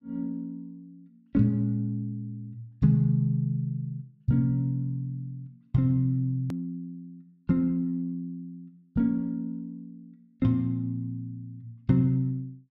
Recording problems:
hard cut with a click; at 6.5 s

